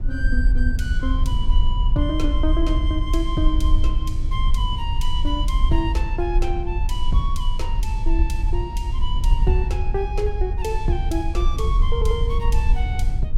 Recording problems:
rumble; below 54 Hz, SNR -5 dB

